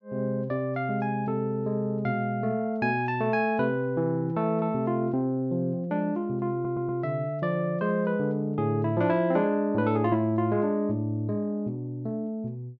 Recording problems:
treble missing; nothing above 7.3 kHz
audio stuttering; at 6.5 s

